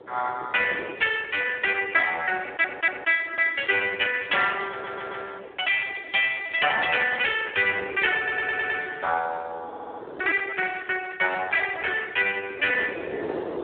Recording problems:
telephone audio; 300 Hz to 3.7 kHz, Speex
wind on the microphone; below 620 Hz, SNR 16 dB
stutter; 4 times, first at 2.5 s

